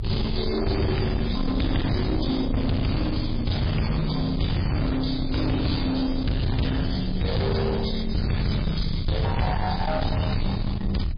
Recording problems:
codec artefacts; MP3, log-spectral distance 6 dB, nothing above 11 kHz
distortion; soft clipping, signal-to-distortion ratio 6 dB
rumble; below 190 Hz, strongest tone 24 Hz, SNR 5 dB

